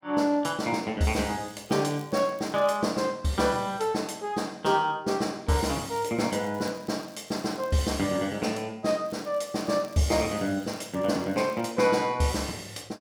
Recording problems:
crackle; from 1.5 to 3 s, from 5.5 to 8 s and from 9 to 12 s; loose cable, SNR 26 dB

